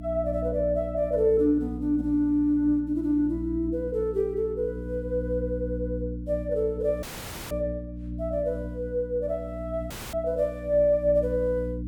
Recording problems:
hum; 60 Hz, harmonics up to 300 Hz, SNR 9 dB
audio cutting out; at 7 s and at 10 s

